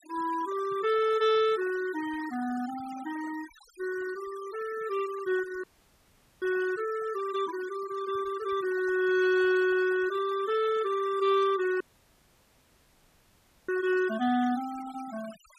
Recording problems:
denoising artefacts; signal-to-artefact ratio 18 dB
audio cutting out; at 5.5 s for 1 s and at 12 s for 2 s

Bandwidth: 14.5 kHz